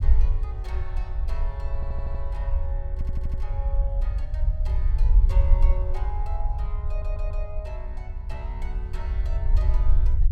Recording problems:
low-frequency rumble; below 58 Hz, SNR -14 dB
audio stuttering; at 2 s, at 3 s and at 7 s

